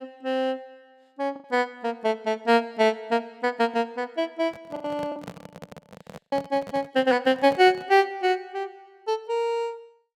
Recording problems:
packet loss; 2% of the sound replaced, filled with the last packet
microphone handling noise; from 4.5 to 8 s; peak -9 dB vs average level

